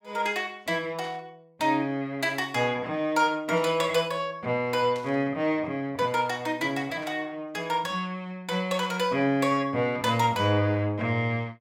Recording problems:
static burst; 4 times, first at 1 s; peak -13 dB vs average level

